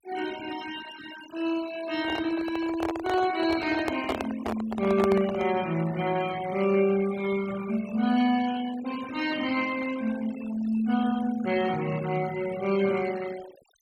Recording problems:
denoising artefacts; signal-to-artefact ratio 15 dB
handling noise; from 2 to 5.5 s; peak +1 dB vs average level

